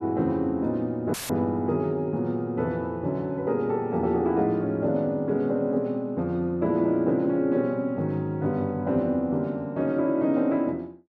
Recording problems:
dropout; at 1 s; filled with static

